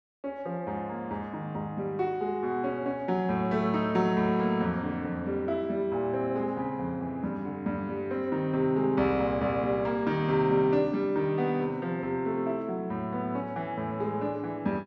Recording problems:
none

